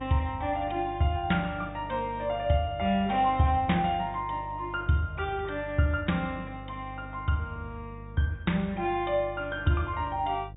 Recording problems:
low-pass filter; nothing above 4 kHz
hum; 50 Hz, harmonics up to 500 Hz, SNR 15 dB

